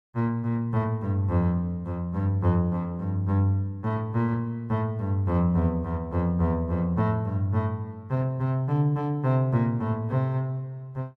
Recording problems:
none

